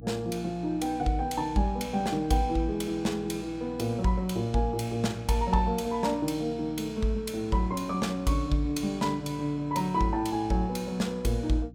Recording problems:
electrical hum; 60 Hz, harmonics up to 300 Hz, SNR 18 dB

